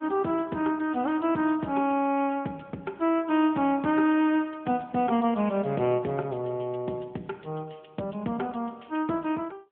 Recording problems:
telephone audio; 170 Hz to 3.4 kHz, AMR-NB

